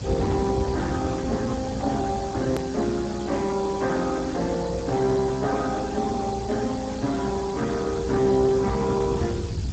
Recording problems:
lossy codec; Speex, log-spectral distance 6 dB, nothing above 13.1 kHz
electrical hum; 50 Hz, harmonics up to 450 Hz, SNR 23 dB
hiss; SNR 16 dB
rumble; below 160 Hz, SNR 10 dB
click at an edit; at 2.5 s

